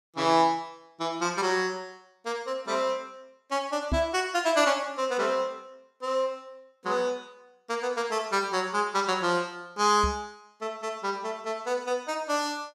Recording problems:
microphone bump; at 4 s and at 10 s; peak +3 dB vs average level

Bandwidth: 15 kHz